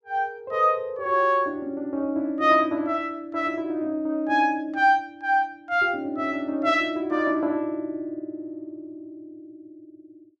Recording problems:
none

